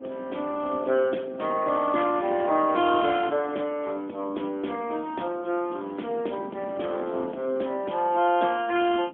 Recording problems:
phone line; 220 Hz to 3.4 kHz, AMR-NB, then MP3
wind noise; below 390 Hz, SNR 17 dB

